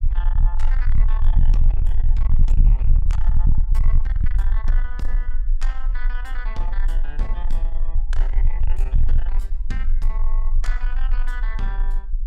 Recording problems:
distorted audio; soft clipping, signal-to-distortion ratio 7 dB
low-frequency rumble; below 36 Hz, strongest tone 22 Hz, SNR -14 dB

